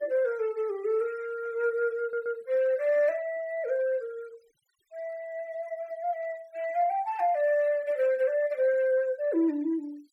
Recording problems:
noise reduction artefacts; signal-to-artefact ratio 24 dB
stutter; at 2 s

